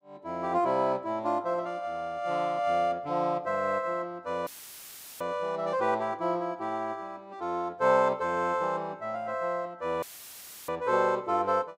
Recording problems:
dropout; at 4.5 s for 0.5 s and at 10 s for 0.5 s; filled with static

